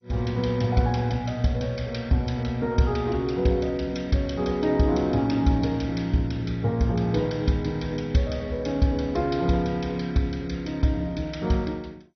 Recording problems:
lossy codec; MP2, log-spectral distance 3 dB, nothing above 6 kHz

